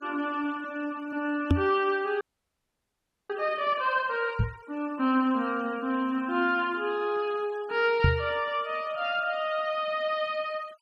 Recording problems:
noise reduction artefacts; signal-to-artefact ratio 25 dB
microphone bump; at 1.5 s, at 4.5 s and at 8 s; peak +10 dB vs average level
frozen audio; at 2 s for 1 s

